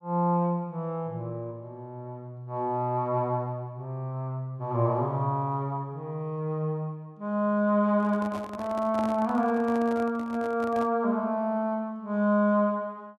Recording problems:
handling noise; from 8 to 11 s; peak -5 dB vs average level

